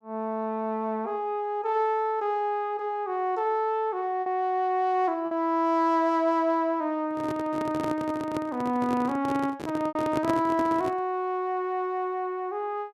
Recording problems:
lost packets; 1.4% of the sound replaced, filled with repeated pitch periods
microphone handling noise; from 7 to 11 s; peak +2 dB vs average level

